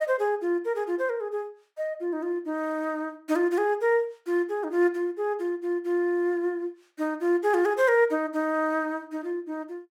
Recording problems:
none

